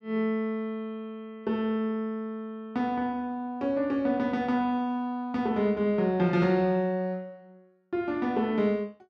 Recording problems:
none

